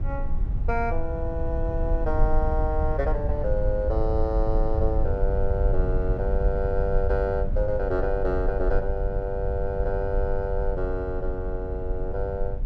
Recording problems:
rumble; below 66 Hz, SNR 0 dB

